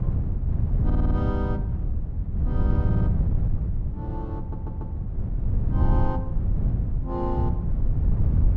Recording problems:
wind on the microphone; below 120 Hz, SNR -7 dB
stutter; at 1 s, at 3 s and at 4.5 s

